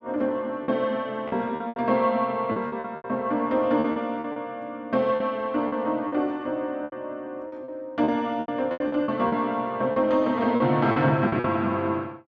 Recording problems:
packet loss; 11% of the sound replaced, filled with repeated pitch periods

